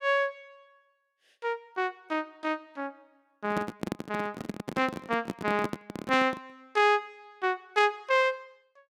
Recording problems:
microphone handling noise; from 3.5 to 6.5 s; peak +1 dB vs average level

